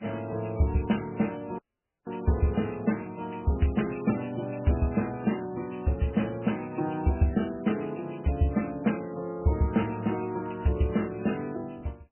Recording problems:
lossy codec; MP3, log-spectral distance 7 dB, nothing above 3 kHz
audio cutting out; at 1.5 s

